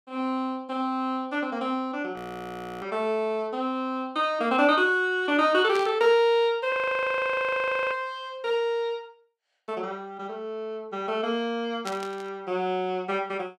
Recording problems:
frozen audio; at 2 s for 0.5 s and at 6.5 s for 1 s
burst of static; at 5.5 s and at 12 s; peak -5 dB vs average level

